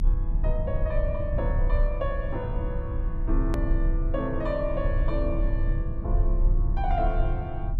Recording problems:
low-frequency rumble; below 58 Hz, strongest tone 32 Hz, SNR -3 dB
hard cut with a click; at 3.5 s

